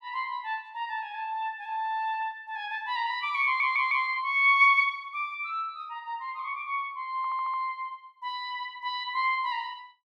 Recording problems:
audio stuttering; at 3.5 s and at 7 s

